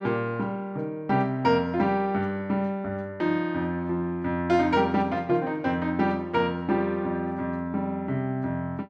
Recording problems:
none

